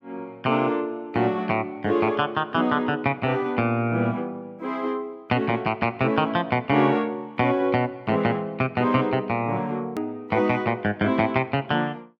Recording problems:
hard cut with a click; at 10 s

